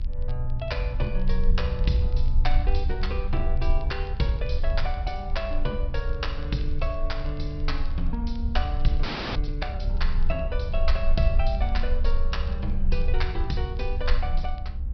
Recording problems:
treble missing; nothing above 5.5 kHz
electrical hum; 50 Hz, harmonics up to 1.1 kHz, SNR 17 dB
rumble; below 60 Hz, strongest tone 22 Hz, SNR -3 dB
crackling; vinyl, SNR 27 dB
audio freezing; at 9 s

